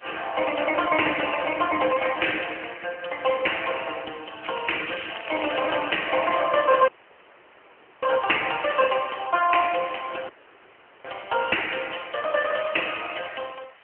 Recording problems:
telephone audio; 300 Hz to 3 kHz, AMR-NB
hiss; SNR 27 dB
crackling; at 2 s and from 4.5 to 6.5 s; loose cable, SNR 13 dB
audio cutting out; at 7 s for 1 s and at 10 s for 1 s

